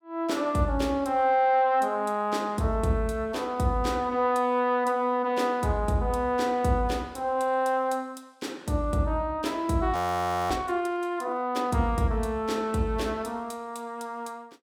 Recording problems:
frozen audio; at 10 s for 0.5 s

